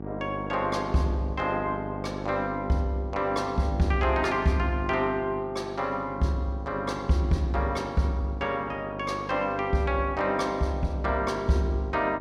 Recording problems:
hum; 50 Hz, harmonics up to 1.1 kHz, SNR 11 dB

